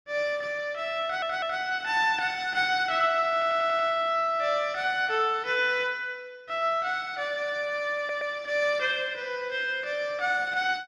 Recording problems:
stutter; at 1 s, at 3.5 s and at 8 s

